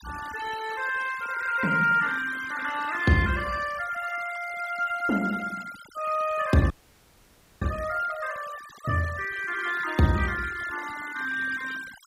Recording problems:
denoising artefacts; signal-to-artefact ratio 16 dB
audio freezing; at 6.5 s for 1 s

